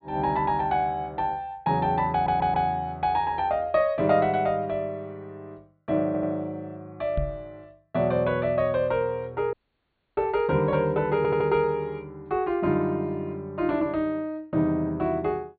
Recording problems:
treble cut off; nothing above 4.5 kHz
stutter; at 2 s, at 6 s and at 11 s
knock on the microphone; at 7 s; peak 0 dB vs average level
dropout; at 9.5 s for 0.5 s

